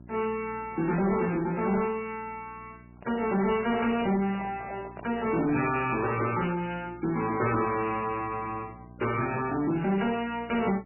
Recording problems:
lossy codec; MP3, log-spectral distance 4 dB, nothing above 2.4 kHz
distortion; soft clipping, signal-to-distortion ratio 11 dB
hum; 60 Hz, harmonics up to 720 Hz, SNR 21 dB
microphone handling noise; from 3 to 6 s; peak -9 dB vs average level

